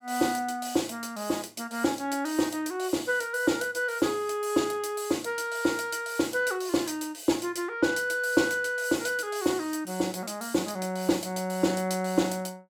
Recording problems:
none

